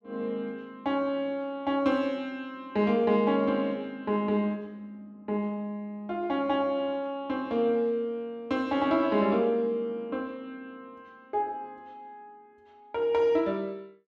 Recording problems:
none

